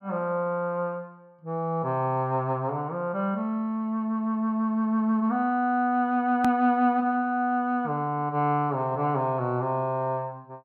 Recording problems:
hard cut with a click; at 6.5 s

